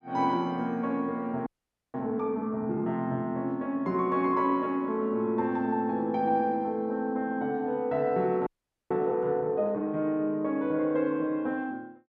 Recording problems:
frozen audio; at 1.5 s and at 8.5 s

